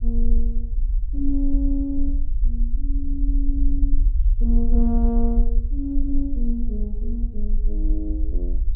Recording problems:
treble cut off; nothing above 4 kHz
rumble; below 42 Hz, strongest tone 18 Hz, SNR -4 dB

